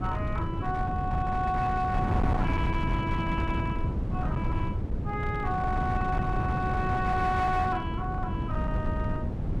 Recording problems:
distorted audio; hard clipping, signal-to-distortion ratio 12 dB
wind on the microphone; below 200 Hz, SNR 0 dB

